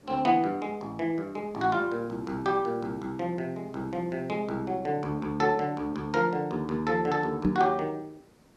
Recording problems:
background hiss; slope -6 dB per octave, SNR 28 dB
microphone thump; at 7.5 s; peak +7 dB vs average level

